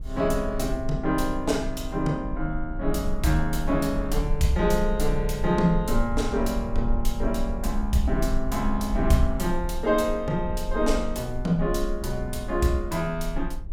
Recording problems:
rumble; below 46 Hz, strongest tone 18 Hz, SNR 7 dB

